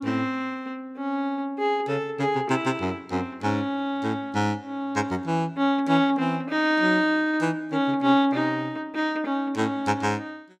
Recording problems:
none

